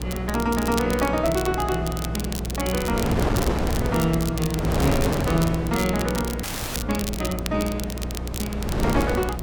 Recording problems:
hum; 60 Hz, harmonics up to 720 Hz, SNR 6 dB
wind noise; below 610 Hz, SNR 3 dB
crackling; vinyl, SNR 8 dB
audio freezing; at 6.5 s

